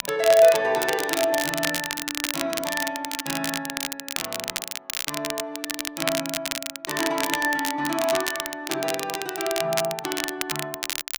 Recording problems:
crackling; vinyl, SNR 4 dB

